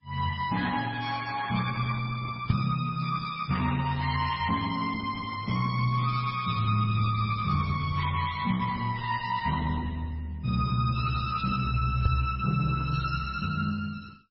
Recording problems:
lossy compression; Opus, then MP3, log-spectral distance 5 dB, nothing above 5.5 kHz
microphone bump; at 2.5 s and at 12 s; peak +8 dB vs average level

